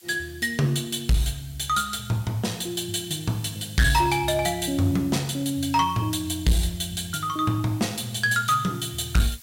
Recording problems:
distorted audio; hard clipping, uneven, signal-to-distortion ratio 10 dB
background hiss; SNR 22 dB

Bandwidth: 16 kHz